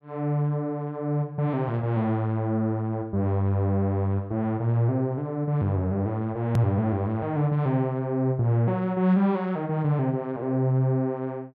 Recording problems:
click at an edit; at 6.5 s

